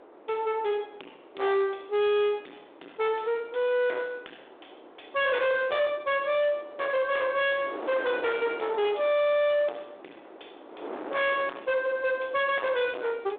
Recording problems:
telephone audio; 240 Hz to 3.9 kHz, G.726
distorted audio; soft clipping, signal-to-distortion ratio 7 dB
wind on the microphone; below 1.1 kHz, SNR 17 dB

